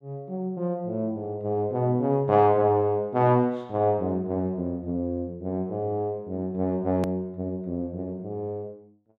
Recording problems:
edit click; at 7 s

